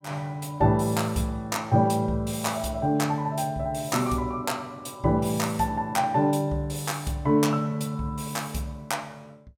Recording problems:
none

